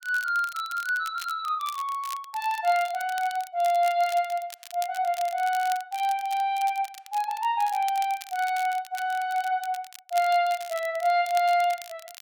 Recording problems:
crackle; vinyl, SNR 17 dB

